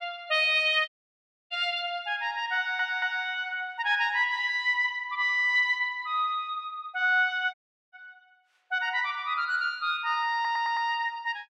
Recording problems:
dropout; at 1 s for 0.5 s and at 7.5 s
stutter; at 2.5 s and at 10 s

